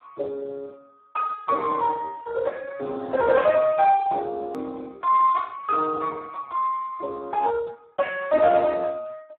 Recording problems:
phone line; 300 Hz to 2.1 kHz, Speex
edit click; at 4.5 s

